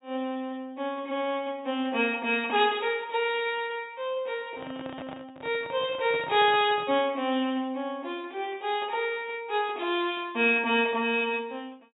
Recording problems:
low-pass filter; nothing above 4 kHz
handling noise; from 4.5 to 7 s; peak -10 dB vs average level

